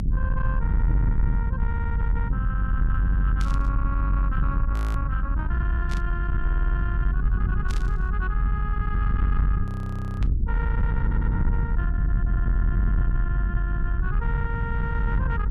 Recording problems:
distortion; soft clipping, signal-to-distortion ratio 11 dB
low-frequency rumble; below 80 Hz, strongest tone 48 Hz, SNR -9 dB
stutter; 4 times, first at 1.5 s
burst of static; 4 times, first at 3.5 s; peak -1 dB vs average level
audio freezing; at 4.5 s and at 9.5 s for 0.5 s

